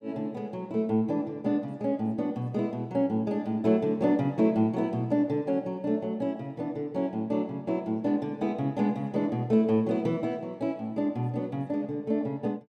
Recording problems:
none

